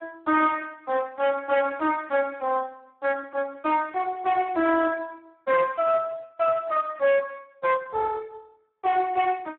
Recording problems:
phone line; 280 Hz to 2.2 kHz, Speex
distortion; hard clipping, uneven, signal-to-distortion ratio 9 dB

